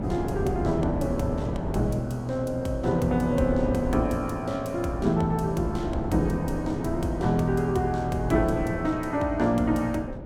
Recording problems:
wind noise; below 370 Hz, SNR 8 dB

